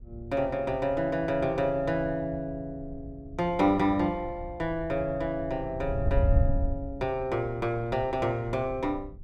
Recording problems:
wind noise; below 94 Hz, SNR 8 dB

